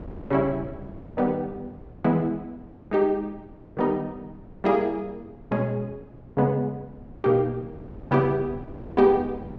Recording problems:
wind noise; below 340 Hz, SNR 19 dB

